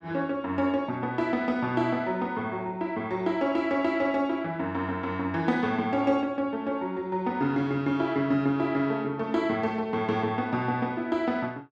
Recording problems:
none

